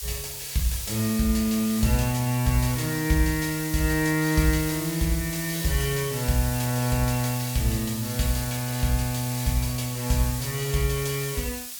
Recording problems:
hiss; slope +4 dB per octave, SNR 7 dB

